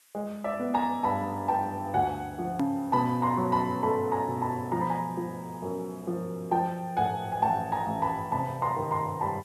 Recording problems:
background hiss; SNR 27 dB
click at an edit; at 2.5 s

